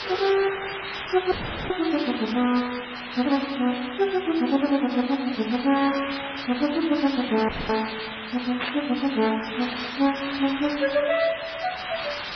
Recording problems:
lossy codec; MP3, then Vorbis, log-spectral distance 19 dB
hiss; SNR 8 dB
audio cutting out; at 1.5 s and at 7.5 s
static burst; at 8.5 s; peak +1 dB vs average level

